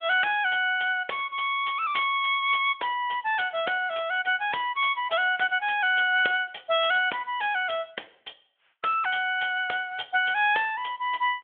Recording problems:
phone line; 390 Hz to 3.4 kHz, Speex

